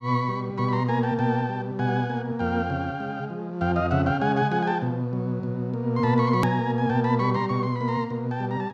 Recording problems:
hard cut with a click; at 6.5 s

